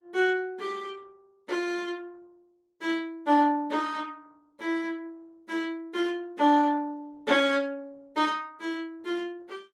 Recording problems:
lossy compression; Opus, log-spectral distance 2 dB, nothing above 18.9 kHz

